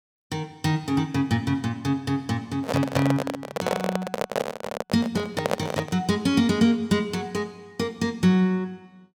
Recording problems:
handling noise; from 2.5 to 6 s; peak +4 dB vs average level

